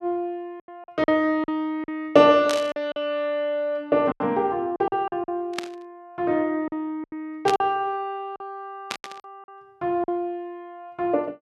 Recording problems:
packet loss; 9% of the sound replaced, filled with silence
burst of static; 4 times, first at 2.5 s; peak 0 dB vs average level

